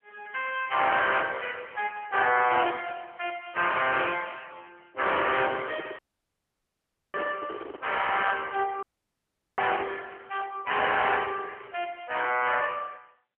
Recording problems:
phone line; 280 Hz to 3.3 kHz, AMR-NB
microphone handling noise; from 5 to 8.5 s; peak -5 dB vs average level
audio cutting out; at 6 s for 1 s and at 9 s for 1 s

